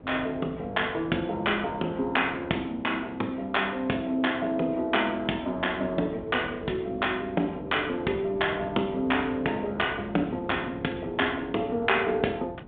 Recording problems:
telephone audio; 220 Hz to 3.6 kHz, G.726
wind noise; below 380 Hz, SNR 17 dB

